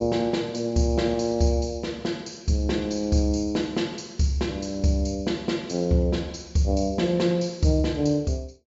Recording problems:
treble missing; nothing above 8 kHz

